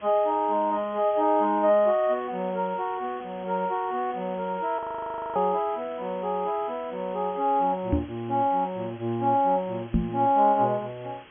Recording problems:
low-pass filter; nothing above 3.3 kHz
background hiss; SNR 23 dB
audio freezing; at 5 s for 0.5 s
microphone thump; at 8 s and at 10 s; peak +5 dB vs average level

